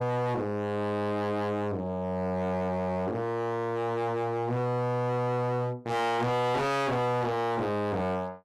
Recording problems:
distorted audio; hard clipping, signal-to-distortion ratio 6 dB

